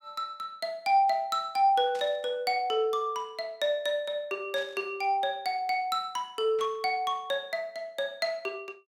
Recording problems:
static burst; at 2 s, at 4.5 s and at 6.5 s; peak -13 dB vs average level

